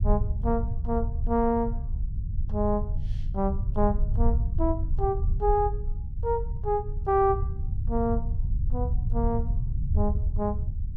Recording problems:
low-frequency rumble; below 80 Hz, SNR 1 dB

